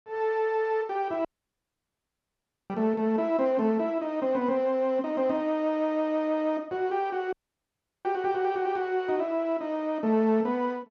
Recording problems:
dropout; at 1.5 s for 1.5 s and at 7.5 s for 0.5 s

